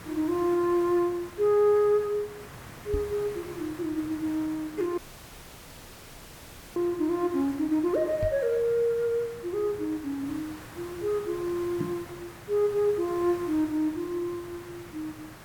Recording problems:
hiss; SNR 17 dB
microphone bump; at 3 s, at 8 s and at 12 s; peak 0 dB vs average level
audio cutting out; at 5 s for 2 s

